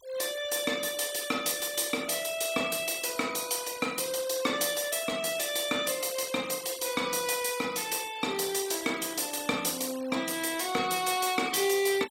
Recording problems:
noise reduction artefacts; signal-to-artefact ratio 16 dB

